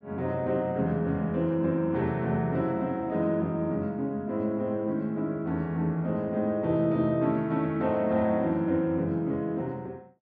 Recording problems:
none

